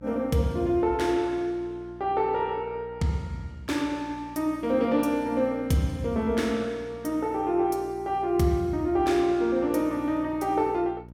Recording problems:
electrical hum; 60 Hz, harmonics up to 900 Hz, SNR 21 dB

